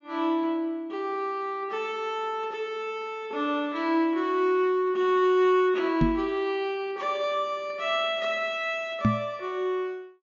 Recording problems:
low-pass filter; nothing above 7.3 kHz
microphone thump; at 6 s and at 9 s; peak +7 dB vs average level

